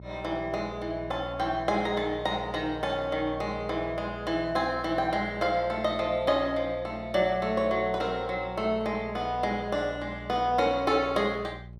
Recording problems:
hum; 60 Hz, harmonics up to 600 Hz, SNR 16 dB

